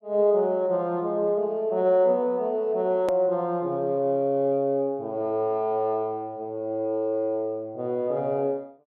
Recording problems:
click at an edit; at 3 s

